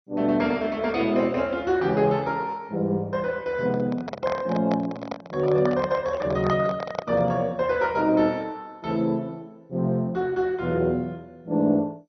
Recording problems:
lossy compression; MP2, log-spectral distance 2 dB, nothing above 5.8 kHz
microphone handling noise; from 3.5 to 7.5 s; peak 0 dB vs average level

